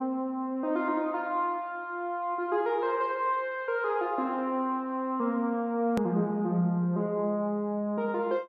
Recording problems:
hard cut with a click; at 6 s

